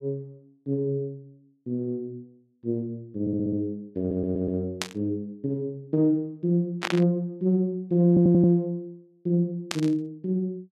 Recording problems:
stutter; at 3 s, at 4 s and at 8 s
burst of static; at 5 s, at 7 s and at 9.5 s; peak +2 dB vs average level

